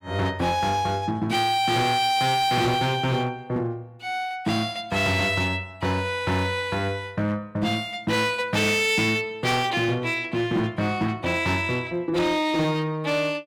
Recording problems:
distortion; hard clipping, uneven, signal-to-distortion ratio 10 dB

